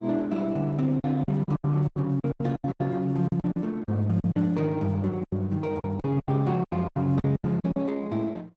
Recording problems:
codec artefacts; Opus, log-spectral distance 2 dB, nothing above 7.8 kHz
lost packets; 17% of the sound replaced, filled with silence

